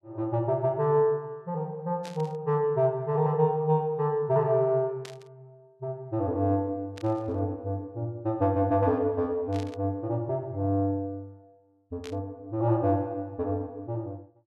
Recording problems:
burst of static; 5 times, first at 2 s; peak -11 dB vs average level

